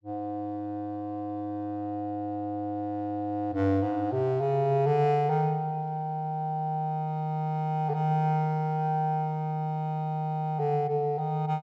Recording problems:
none

